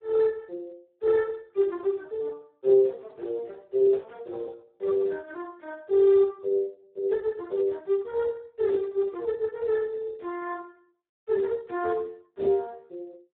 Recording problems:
telephone audio; 340 Hz to 2.2 kHz, Speex

